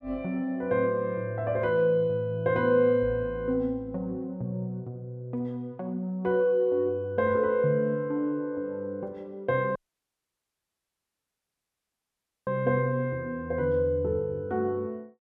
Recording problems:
dropout; at 10 s for 2.5 s

